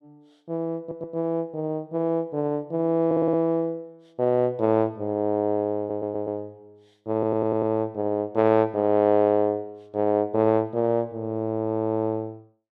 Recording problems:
audio stuttering; 4 times, first at 1 s

